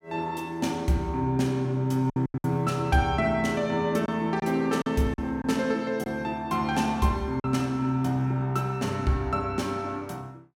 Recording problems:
packet loss; 4% of the sound replaced, filled with silence

